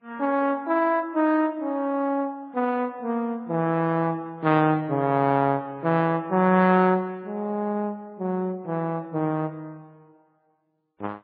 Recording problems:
lossy codec; Vorbis, then MP3, log-spectral distance 2 dB

